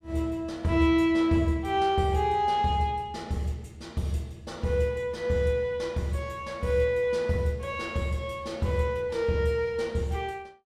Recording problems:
none

